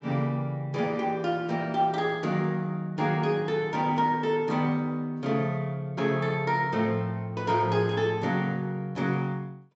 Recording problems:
low-pass filter; nothing above 8 kHz

